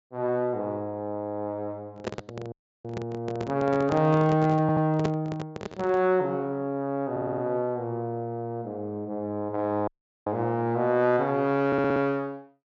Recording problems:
treble missing; nothing above 8 kHz
microphone handling noise; from 2 to 6 s; peak +1 dB vs average level
dropout; at 2.5 s and at 10 s
stutter; at 4.5 s, at 7 s and at 12 s

